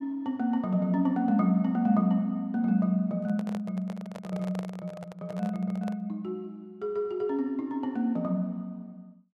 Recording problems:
handling noise; from 3 to 6 s; peak -8 dB vs average level

